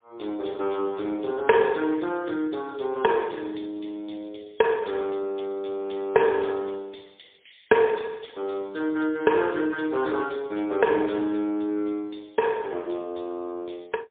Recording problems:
phone line; 320 Hz to 3.4 kHz, AMR-NB, then MP3

